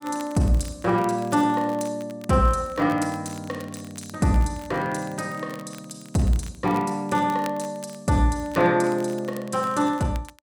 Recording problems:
crackle; vinyl, SNR 23 dB

